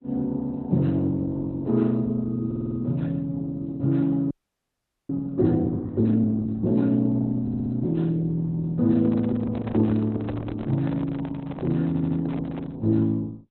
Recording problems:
codec artefacts; Opus, log-spectral distance 2 dB, nothing above 4.1 kHz
audio stuttering; at 2.5 s, at 7.5 s and at 12 s
frozen audio; at 4.5 s for 1 s
handling noise; from 9 to 13 s; peak -5 dB vs average level

